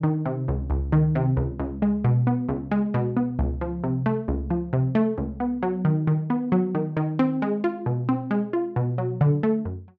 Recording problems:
none

